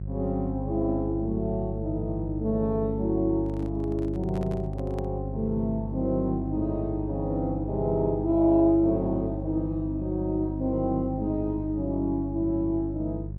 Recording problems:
hum; 50 Hz, harmonics up to 400 Hz, SNR 7 dB
handling noise; from 3.5 to 5 s; peak -10 dB vs average level

